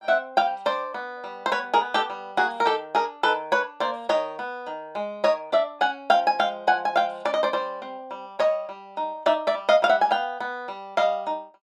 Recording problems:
none

